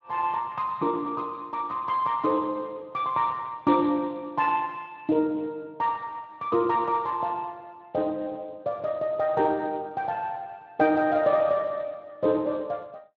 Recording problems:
codec artefacts; Speex, log-spectral distance 2 dB

